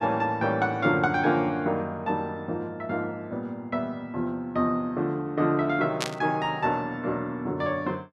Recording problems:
static burst; at 6 s; peak +3 dB vs average level

